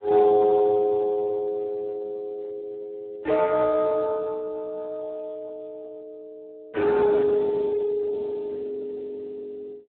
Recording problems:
phone line; 340 Hz to 2.3 kHz, Speex

